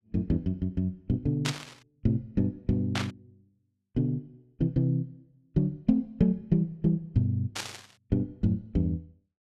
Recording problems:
static burst; at 1.5 s, at 3 s and at 7.5 s; peak +2 dB vs average level

